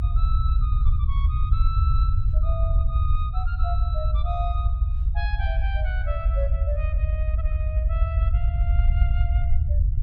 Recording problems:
rumble; below 74 Hz, SNR -12 dB

